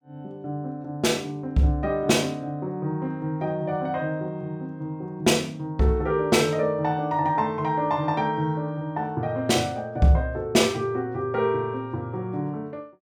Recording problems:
none

